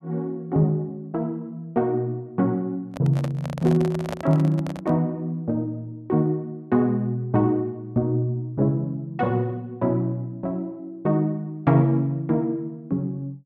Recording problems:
microphone handling noise; from 3 to 5 s; peak -3 dB vs average level

